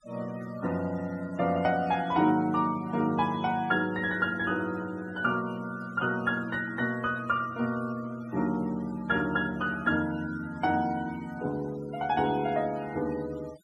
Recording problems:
noise reduction artefacts; signal-to-artefact ratio 20 dB

